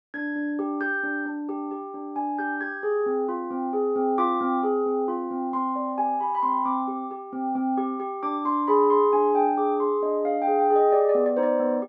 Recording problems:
none

